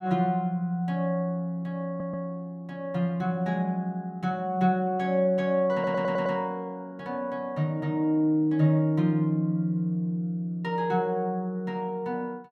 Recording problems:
audio stuttering; at 2 s and at 5.5 s

